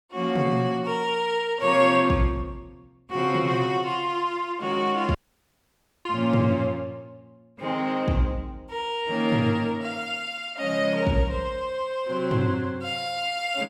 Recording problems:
audio cutting out; at 5 s for 1 s

